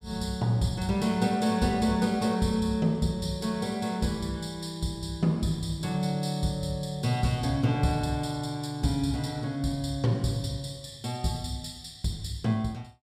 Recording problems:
none

